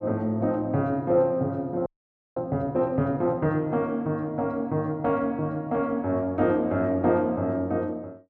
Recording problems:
audio freezing; at 2 s

